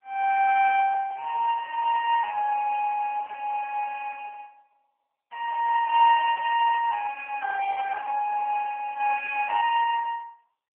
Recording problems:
telephone audio; 500 Hz to 3 kHz, AMR-NB

